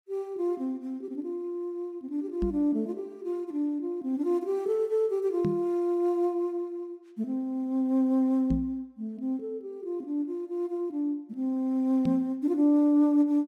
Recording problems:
knock on the microphone; 4 times, first at 2.5 s; peak +2 dB vs average level

